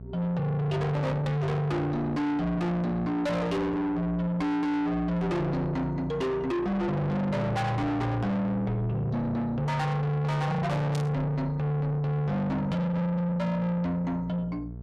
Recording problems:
distorted audio; soft clipping, signal-to-distortion ratio 6 dB
hum; 60 Hz, harmonics up to 1 kHz, SNR 16 dB
burst of static; at 11 s; peak -7 dB vs average level

